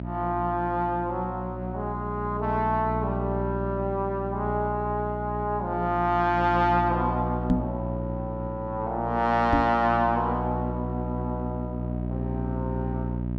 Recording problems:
mains hum; 60 Hz, harmonics up to 900 Hz, SNR 5 dB
microphone thump; at 7.5 s and at 9.5 s; peak +7 dB vs average level

